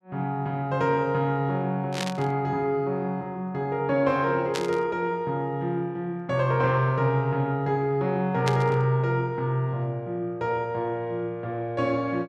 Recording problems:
burst of static; at 2 s, at 4.5 s and at 8.5 s; peak 0 dB vs average level

